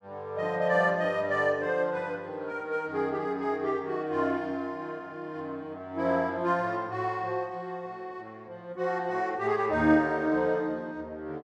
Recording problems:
none

